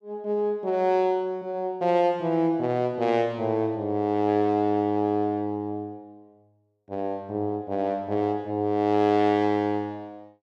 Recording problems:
none

